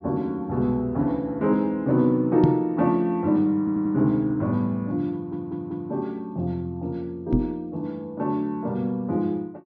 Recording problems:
low-pass filter; nothing above 6.3 kHz
knock on the microphone; at 2.5 s and at 7.5 s; peak +8 dB vs average level
stutter; at 3.5 s and at 5 s

